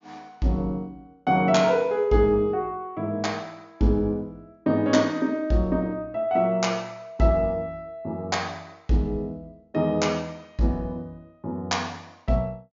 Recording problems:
low-pass filter; nothing above 7.2 kHz

